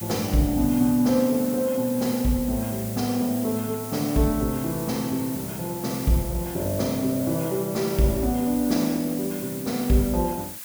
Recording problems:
background hiss; slope +1 dB per octave, SNR 11 dB

